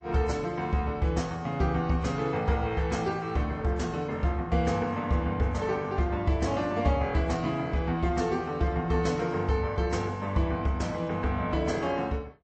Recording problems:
codec artefacts; MP3, log-spectral distance 2 dB, nothing above 8.2 kHz

